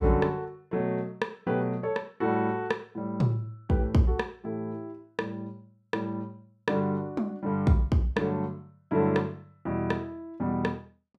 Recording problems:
none

